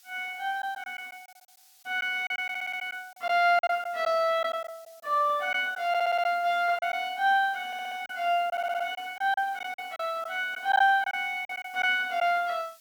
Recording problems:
background hiss; slope +5 dB per octave, SNR 27 dB
packet loss; 7% of the sound replaced, filled with silence
audio stuttering; 4 times, first at 2.5 s

